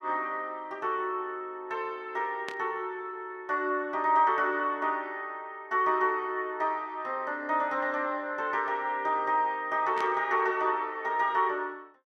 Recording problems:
static burst; at 2.5 s and at 10 s; peak -5 dB vs average level

